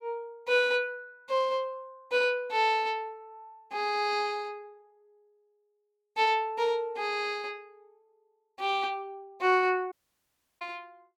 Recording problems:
dropout; at 10 s for 0.5 s

